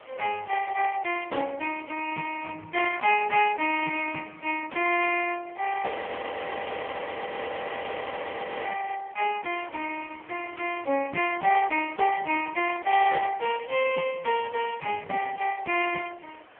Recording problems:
phone line; 240 Hz to 3.1 kHz, AMR-NB
background hiss; SNR 25 dB
frozen audio; at 6 s for 3 s

